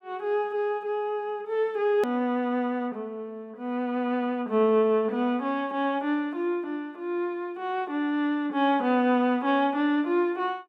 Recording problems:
click at an edit; at 2 s

